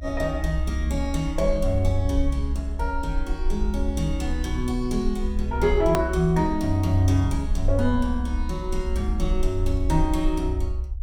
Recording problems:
rumble; below 66 Hz, SNR 4 dB
hard cut with a click; at 6 s

